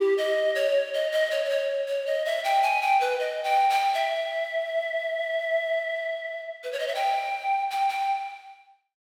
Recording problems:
none

